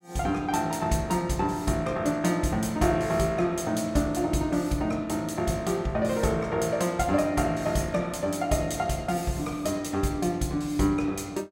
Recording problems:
none

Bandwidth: 16 kHz